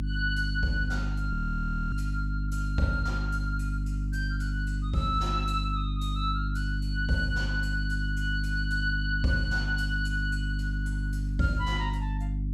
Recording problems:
hum; 50 Hz, harmonics up to 300 Hz, SNR -1 dB
frozen audio; at 1.5 s for 0.5 s

